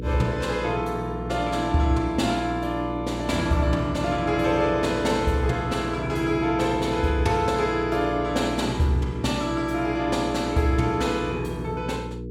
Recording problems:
hum; 60 Hz, harmonics up to 480 Hz, SNR 9 dB

